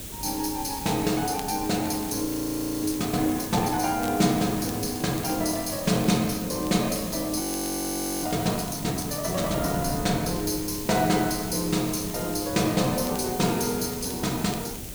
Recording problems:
background hiss; slope +1 dB per octave, SNR 10 dB
wind noise; below 300 Hz, SNR 15 dB
crackle; vinyl, SNR 22 dB
frozen audio; at 2.5 s for 0.5 s and at 7.5 s for 1 s

